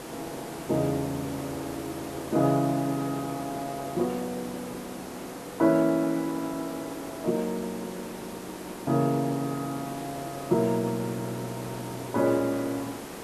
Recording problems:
hiss; slope -6 dB per octave, SNR 10 dB

